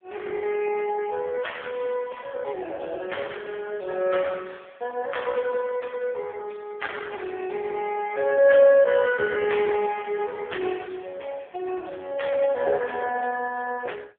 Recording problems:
phone line; 280 Hz to 3.4 kHz, AMR-NB

